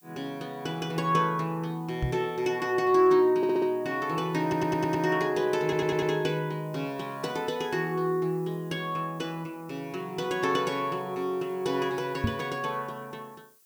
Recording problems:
hiss; slope +2 dB per octave, SNR 28 dB
microphone bump; at 2 s and at 12 s; peak +4 dB vs average level
audio stuttering; at 3.5 s, at 4.5 s and at 5.5 s

